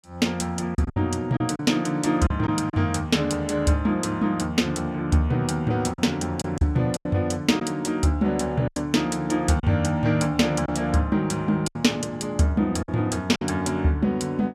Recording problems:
packet loss; 5% of the sound replaced, filled with silence

